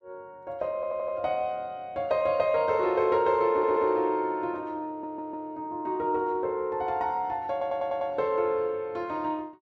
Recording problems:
audio stuttering; 4 times, first at 1 s

